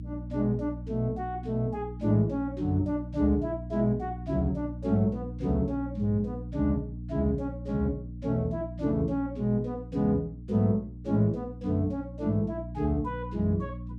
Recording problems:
hum; 60 Hz, harmonics up to 300 Hz, SNR 10 dB

